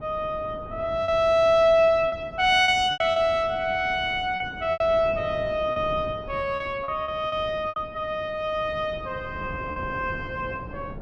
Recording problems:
wind on the microphone; below 400 Hz, SNR 17 dB
lost packets; 6% of the sound replaced, filled with repeated pitch periods

